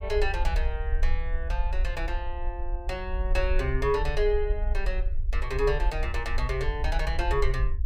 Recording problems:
rumble; below 54 Hz, SNR 0 dB

